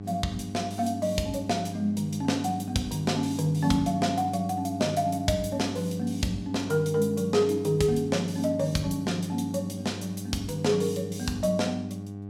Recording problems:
hum; 50 Hz, harmonics up to 800 Hz, SNR 10 dB

